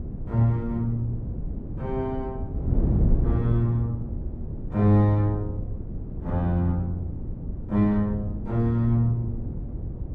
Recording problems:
wind noise; below 170 Hz, SNR 6 dB

